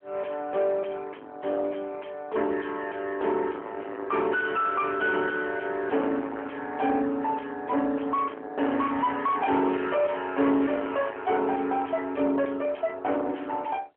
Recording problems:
telephone audio; 240 Hz to 3.4 kHz, AMR-NB
distortion; soft clipping, signal-to-distortion ratio 8 dB

